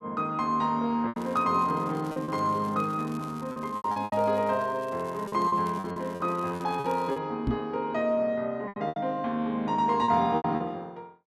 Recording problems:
packet loss; 9% of the sound replaced, filled with repeated pitch periods
crackling; from 1 to 7 s; loose cable, SNR 25 dB
microphone bump; at 7.5 s; peak +4 dB vs average level

